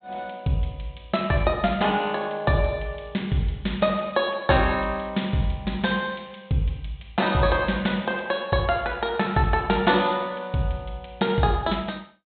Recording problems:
treble cut off; nothing above 4 kHz

